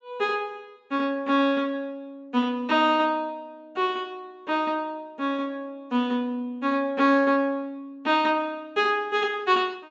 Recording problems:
low-pass filter; nothing above 8 kHz

